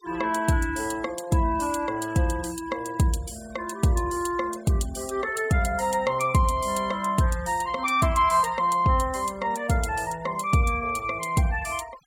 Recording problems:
noise reduction artefacts; signal-to-artefact ratio 22 dB

